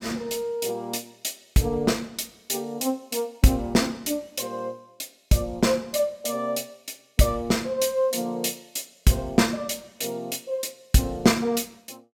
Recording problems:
none

